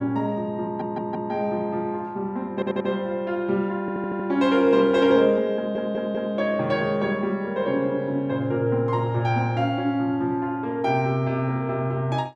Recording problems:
audio stuttering; 4 times, first at 0.5 s

